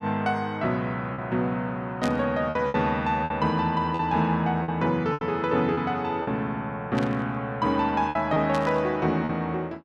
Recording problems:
packet loss; 6% of the sound replaced, filled with repeated pitch periods
static burst; at 2 s, at 7 s and at 8.5 s; peak -5 dB vs average level

